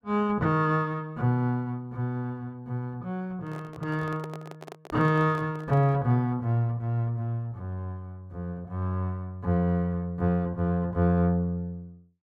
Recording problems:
handling noise; from 3.5 to 6 s; peak -8 dB vs average level

